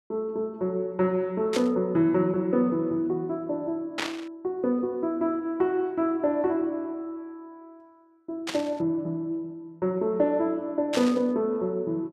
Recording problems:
static burst; 4 times, first at 1.5 s; peak +1 dB vs average level

